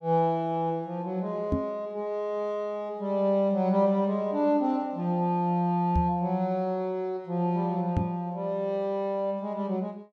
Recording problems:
knock on the microphone; at 1.5 s, at 6 s and at 8 s; peak +4 dB vs average level

